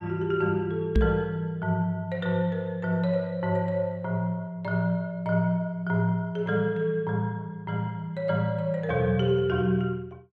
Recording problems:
microphone bump; at 1 s; peak +7 dB vs average level

